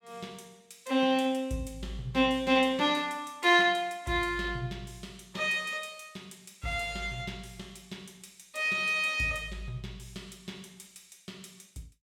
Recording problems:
none

